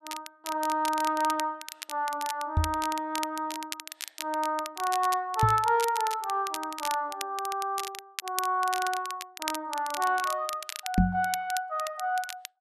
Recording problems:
crackling; vinyl, SNR 9 dB
microphone bump; at 2.5 s, at 5.5 s and at 11 s; peak +10 dB vs average level

